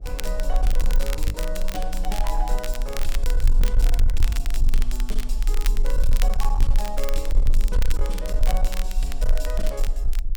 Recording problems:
distortion; hard clipping, signal-to-distortion ratio 11 dB
electrical hum; 60 Hz, harmonics up to 720 Hz, SNR 21 dB
low-frequency rumble; below 36 Hz, strongest tone 20 Hz, SNR -8 dB
crackle; vinyl, SNR 4 dB
lost packets; 0.8% of the sound replaced, filled with the last packet

